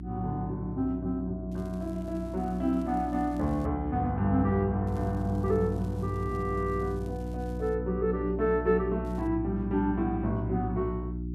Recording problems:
electrical hum; 60 Hz, harmonics up to 360 Hz, SNR 7 dB
crackle; from 1.5 to 3.5 s, from 5 to 8 s and at 9 s; loose cable, SNR 30 dB

